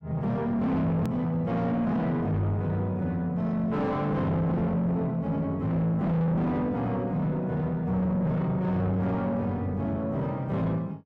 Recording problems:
distorted audio; soft clipping, signal-to-distortion ratio 7 dB
edit click; at 1 s

